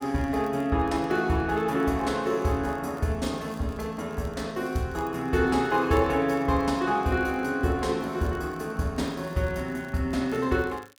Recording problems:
crackling; vinyl, SNR 30 dB

